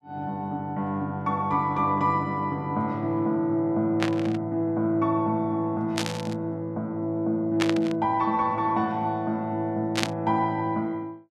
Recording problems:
burst of static; 4 times, first at 4 s; peak +4 dB vs average level

